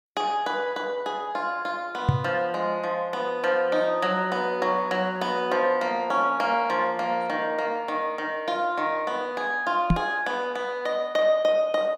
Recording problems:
knock on the microphone; at 2 s and at 10 s; peak +8 dB vs average level

